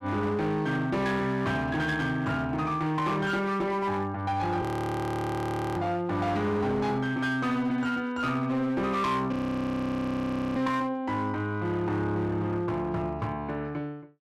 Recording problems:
distortion; hard clipping, signal-to-distortion ratio 10 dB
frozen audio; at 4.5 s for 1 s and at 9.5 s for 1 s

